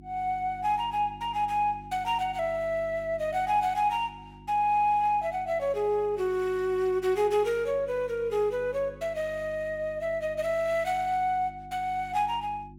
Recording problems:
hum; 50 Hz, harmonics up to 350 Hz, SNR 20 dB

